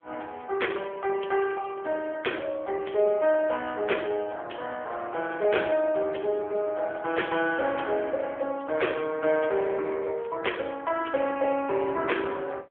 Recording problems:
telephone audio; 340 Hz to 3.4 kHz, AMR-NB

